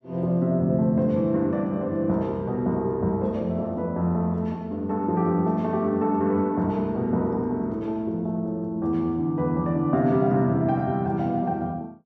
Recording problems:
none

